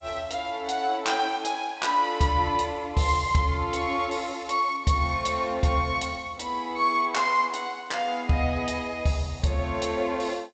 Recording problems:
codec artefacts; G.722, log-spectral distance 3 dB, nothing above 7.8 kHz

